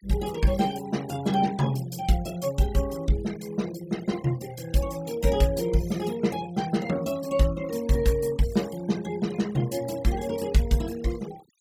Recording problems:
noise reduction artefacts; signal-to-artefact ratio 18 dB

